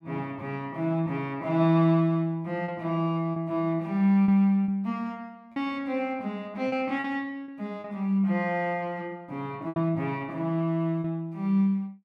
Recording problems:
packet loss; 4% of the sound replaced, filled with repeated pitch periods

